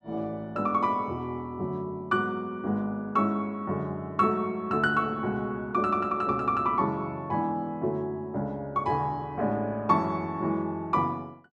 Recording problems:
none

